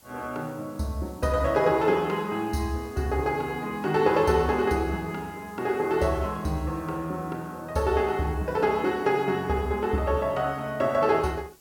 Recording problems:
hiss; SNR 27 dB

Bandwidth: 17 kHz